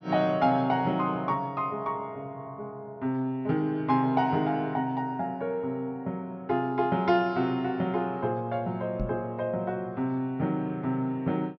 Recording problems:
treble cut off; nothing above 6.1 kHz
microphone bump; at 9 s; peak +1 dB vs average level

